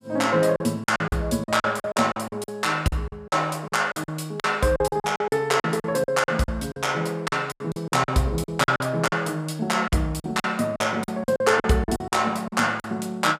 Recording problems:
lost packets; 16% of the sound replaced, filled with silence

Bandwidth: 15 kHz